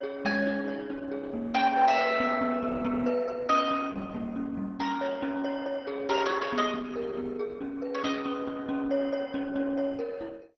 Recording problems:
codec artefacts; MP2, then Opus, log-spectral distance 4 dB, nothing above 5.7 kHz

